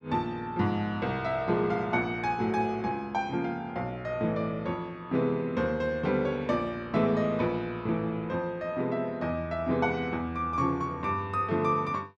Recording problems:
none

